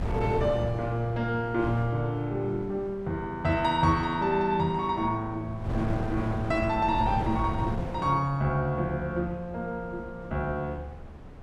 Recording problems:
wind on the microphone; below 350 Hz, SNR 10 dB

